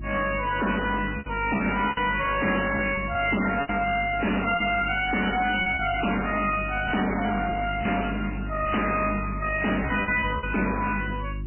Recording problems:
lossy compression; MP3, log-spectral distance 8 dB, nothing above 2.5 kHz
distorted audio; hard clipping, uneven, signal-to-distortion ratio 6 dB
electrical hum; 50 Hz, harmonics up to 350 Hz, SNR 10 dB
packet loss; 6% of the sound replaced, filled with repeated pitch periods

